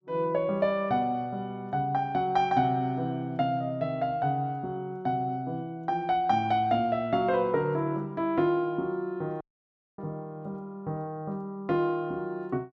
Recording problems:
audio cutting out; at 9.5 s for 0.5 s

